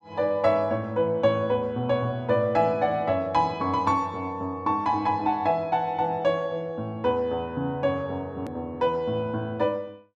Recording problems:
edit click; at 8.5 s

